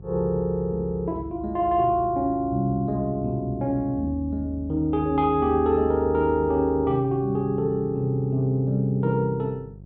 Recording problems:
mains hum; 50 Hz, harmonics up to 550 Hz, SNR 20 dB

